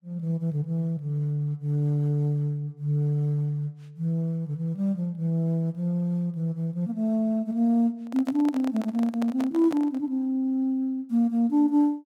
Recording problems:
microphone handling noise; from 8 to 10 s; peak -6 dB vs average level

